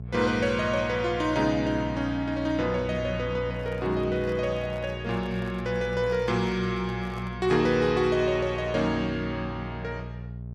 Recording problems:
hum; 60 Hz, harmonics up to 660 Hz, SNR 10 dB
handling noise; from 3.5 to 7.5 s; peak -12 dB vs average level

